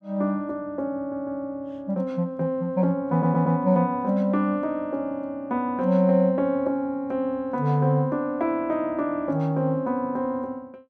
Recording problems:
audio stuttering; at 1 s and at 3 s

